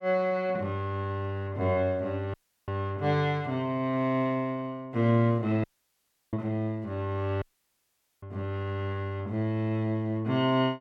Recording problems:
dropout; at 2.5 s, at 5.5 s for 0.5 s and at 7.5 s for 1 s

